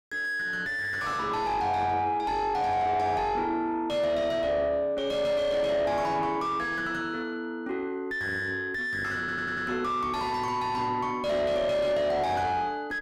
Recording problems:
distorted audio; soft clipping, signal-to-distortion ratio 6 dB
stutter; at 9 s

